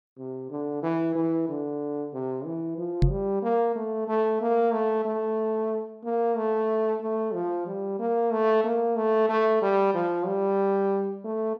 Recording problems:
microphone thump; at 3 s; peak +8 dB vs average level

